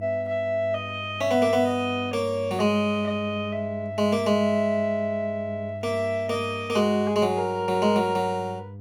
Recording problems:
hum; 50 Hz, harmonics up to 500 Hz, SNR 15 dB

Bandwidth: 16 kHz